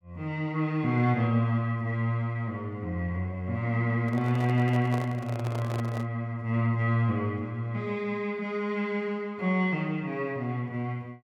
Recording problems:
microphone handling noise; from 4 to 6 s; peak -5 dB vs average level

